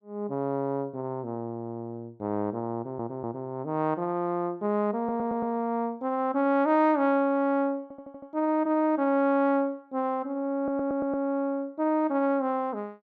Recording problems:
audio stuttering; 4 times, first at 2.5 s

